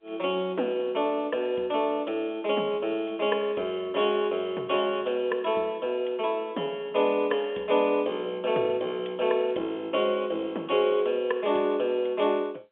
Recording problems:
phone line; 240 Hz to 3.5 kHz, G.711

